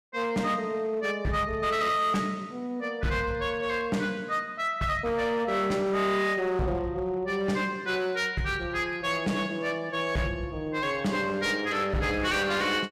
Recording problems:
distorted audio; hard clipping, signal-to-distortion ratio 10 dB

